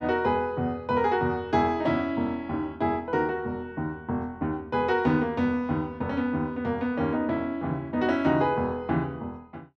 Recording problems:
none

